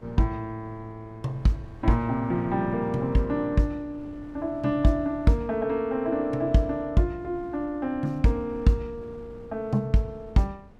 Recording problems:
wind noise; below 280 Hz, SNR 22 dB

